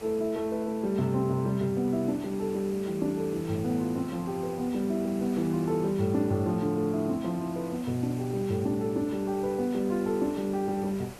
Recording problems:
hiss; SNR 18 dB

